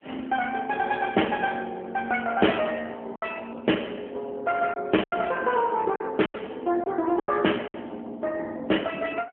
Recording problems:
telephone audio; 240 Hz to 3.4 kHz, AMR-NB
lost packets; 5% of the sound replaced, filled with silence

